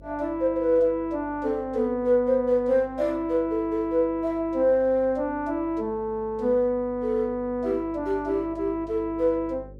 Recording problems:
mains hum; 50 Hz, harmonics up to 550 Hz, SNR 23 dB

